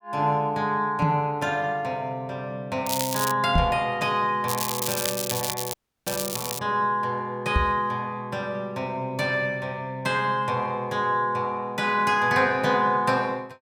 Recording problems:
microphone bump; at 1 s, at 3.5 s and at 7.5 s; peak +6 dB vs average level
crackle; at 3 s and from 4.5 to 6.5 s; loose cable, SNR 4 dB
frozen audio; at 5.5 s

